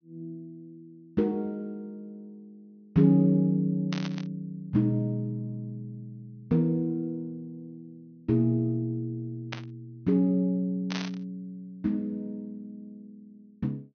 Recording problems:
treble cut off; nothing above 6.4 kHz
static burst; at 4 s, at 9.5 s and at 11 s; peak -3 dB vs average level

